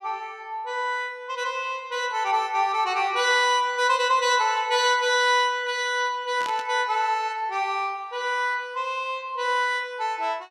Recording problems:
burst of static; at 6.5 s; peak -8 dB vs average level

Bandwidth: 14.5 kHz